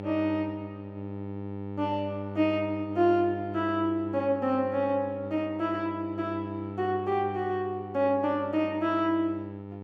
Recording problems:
hum; 50 Hz, harmonics up to 1 kHz, SNR 10 dB

